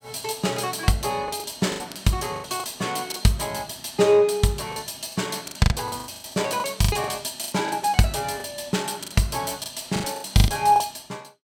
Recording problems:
packet loss; 14% of the sound replaced, filled with the last packet

